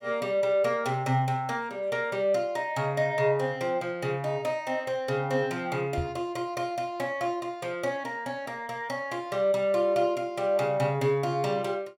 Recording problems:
microphone bump; at 6 s; peak -1 dB vs average level

